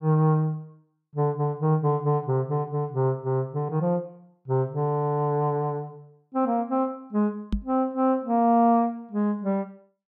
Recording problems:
microphone thump; at 7.5 s; peak +2 dB vs average level

